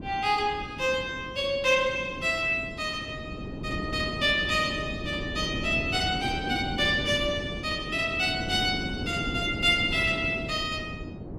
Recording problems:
wind noise; below 350 Hz, SNR 9 dB

